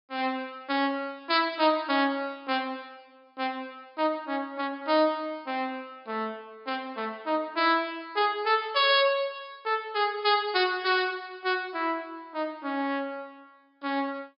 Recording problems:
treble missing; nothing above 5.5 kHz

